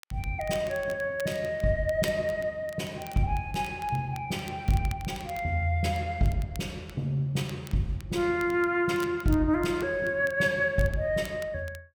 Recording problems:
crackling; vinyl, SNR 20 dB

